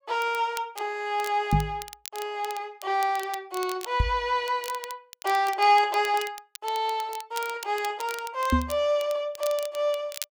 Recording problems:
crackling; vinyl, SNR 15 dB
knock on the microphone; at 1.5 s, at 4 s and at 8.5 s; peak +7 dB vs average level

